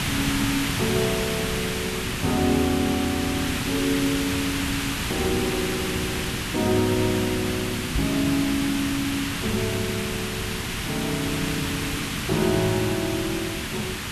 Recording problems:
background hiss; SNR 1 dB
knock on the microphone; at 8 s; peak +1 dB vs average level

